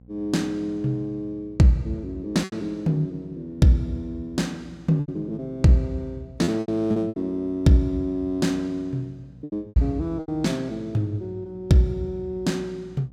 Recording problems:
hum; 60 Hz, harmonics up to 540 Hz, SNR 25 dB
packet loss; 5% of the sound replaced, filled with repeated pitch periods

